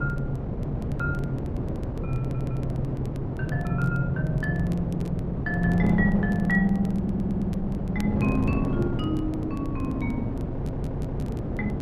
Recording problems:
wind noise; below 310 Hz, SNR 2 dB
crackling; vinyl, SNR 27 dB
stutter; at 2 s, at 7 s and at 11 s

